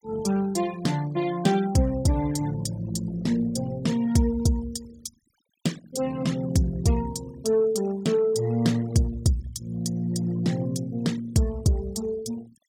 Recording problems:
noise reduction artefacts; signal-to-artefact ratio 22 dB

